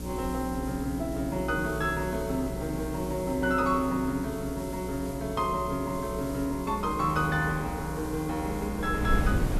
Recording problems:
hum; 60 Hz, harmonics up to 600 Hz, SNR 9 dB
hiss; slope +5 dB per octave, SNR 17 dB
wind on the microphone; below 160 Hz, SNR 11 dB

